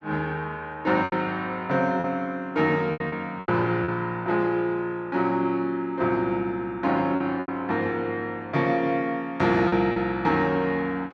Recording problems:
packet loss; 5% of the sound replaced, filled with repeated pitch periods

